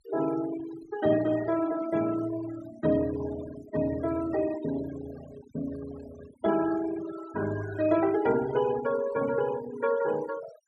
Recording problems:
noise reduction artefacts; signal-to-artefact ratio 14 dB

